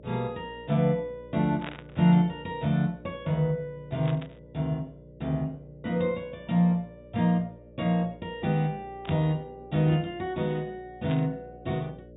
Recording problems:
treble missing; nothing above 4 kHz
electrical hum; 60 Hz, harmonics up to 600 Hz, SNR 22 dB
static burst; 4 times, first at 1.5 s; peak -6 dB vs average level

